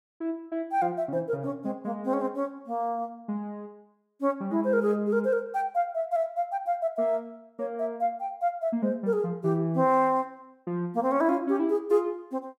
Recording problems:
none

